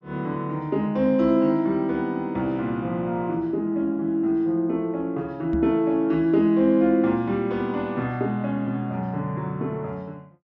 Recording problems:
low-pass filter; nothing above 8 kHz
knock on the microphone; at 5.5 s; peak -2 dB vs average level

